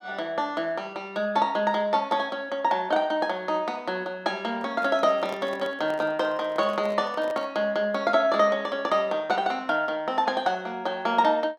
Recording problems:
handling noise; from 4.5 to 7.5 s; peak -7 dB vs average level

